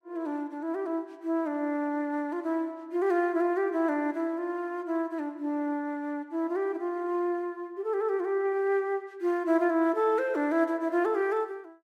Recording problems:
none

